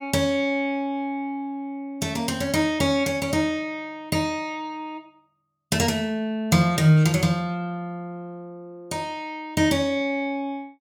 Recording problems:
none

